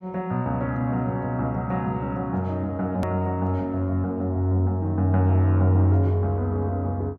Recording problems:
hard cut with a click; at 3 s

